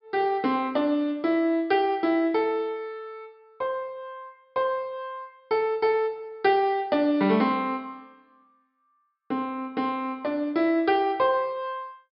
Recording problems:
low-pass filter; nothing above 5.5 kHz

